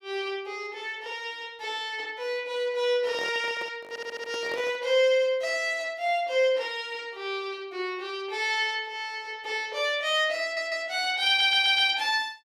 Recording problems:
handling noise; from 3 to 5 s; peak -9 dB vs average level
stutter; at 4 s, at 10 s and at 11 s

